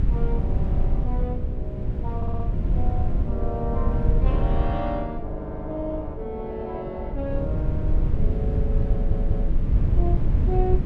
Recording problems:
wind noise; below 86 Hz, SNR -7 dB
stutter; at 2 s and at 9 s

